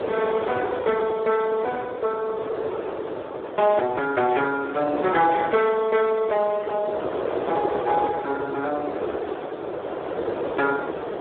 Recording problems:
telephone audio; 300 Hz to 2.4 kHz, Speex
wind on the microphone; below 700 Hz, SNR 5 dB

